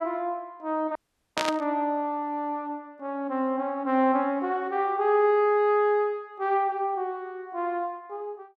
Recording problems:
audio cutting out; at 1 s
burst of static; at 1.5 s; peak +3 dB vs average level

